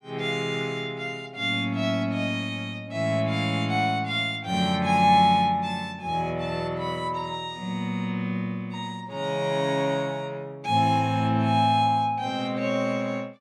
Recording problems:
none

